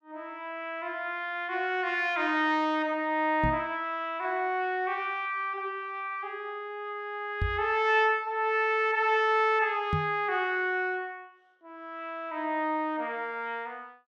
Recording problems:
knock on the microphone; at 3.5 s, at 7.5 s and at 10 s; peak +2 dB vs average level

